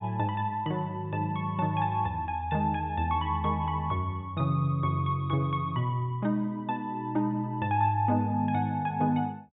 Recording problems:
treble cut off; nothing above 4 kHz

